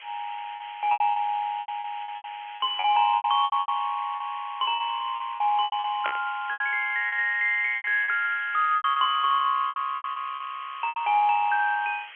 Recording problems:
telephone audio; 320 Hz to 3.4 kHz, G.711
hiss; SNR 18 dB
packet loss; 14% of the sound replaced, filled with repeated pitch periods
burst of static; at 6 s; peak -1 dB vs average level

